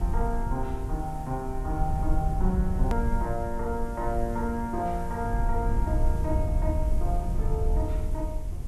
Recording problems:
background hiss; slope -4 dB per octave, SNR 19 dB
rumble; below 74 Hz, SNR -2 dB
hard cut with a click; at 3 s

